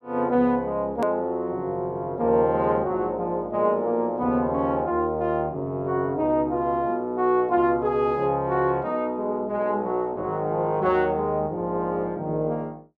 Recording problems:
edit click; at 1 s

